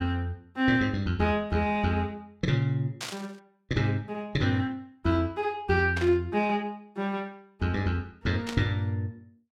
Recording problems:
static burst; at 3 s, at 6 s and at 8.5 s; peak -3 dB vs average level

